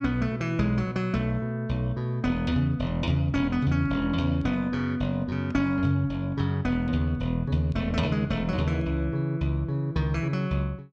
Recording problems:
none

